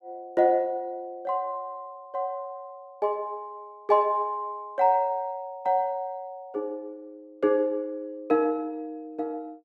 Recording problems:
none

